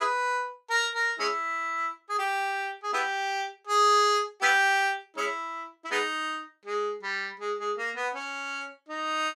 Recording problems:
none

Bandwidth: 15 kHz